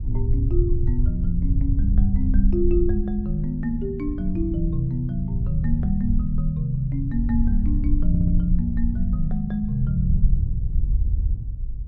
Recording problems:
rumble; below 72 Hz, SNR -1 dB
stutter; at 8 s and at 11 s

